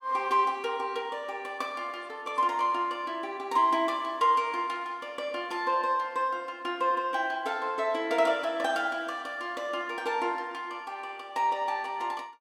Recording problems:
none

